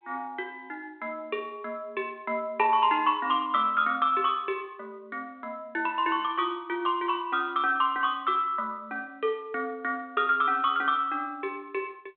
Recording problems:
telephone audio; 300 Hz to 3.6 kHz, G.726

